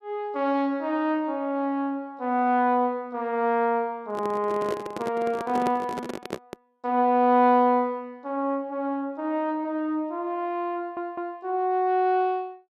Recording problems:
handling noise; from 4 to 6.5 s; peak 0 dB vs average level
audio stuttering; at 11 s

